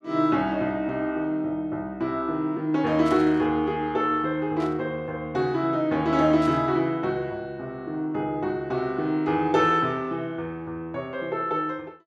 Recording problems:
static burst; at 3 s, at 4.5 s and at 6.5 s; peak -13 dB vs average level

